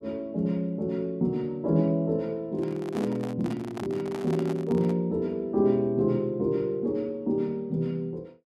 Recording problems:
microphone handling noise; from 2.5 to 5 s; peak -6 dB vs average level

